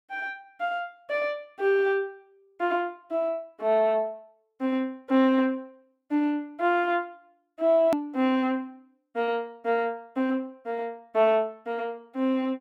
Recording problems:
click at an edit; at 8 s

